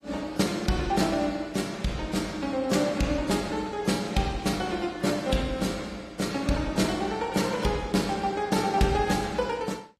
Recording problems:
lossy codec; AAC, then AAC, log-spectral distance 4 dB

